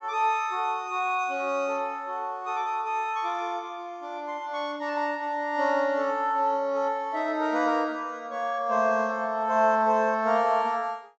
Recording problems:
treble missing; nothing above 8 kHz

